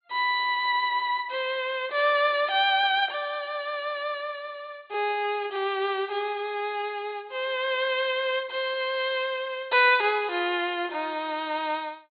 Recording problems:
treble cut off; nothing above 4.5 kHz

